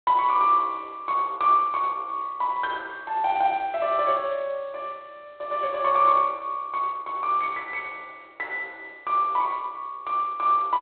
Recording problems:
phone line; 280 Hz to 4 kHz, G.726

